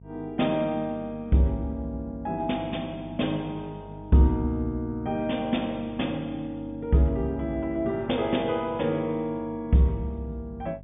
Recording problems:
treble cut off; nothing above 3.6 kHz
hum; 50 Hz, harmonics up to 500 Hz, SNR 18 dB

